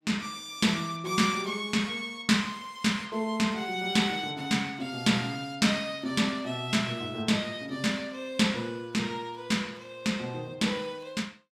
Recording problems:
none

